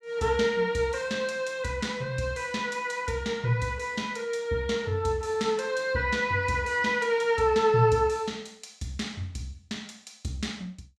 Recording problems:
none

